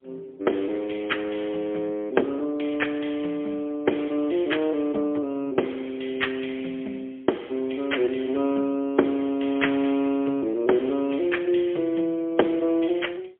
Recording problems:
phone line; 280 Hz to 3.3 kHz, AMR-NB, then MP3

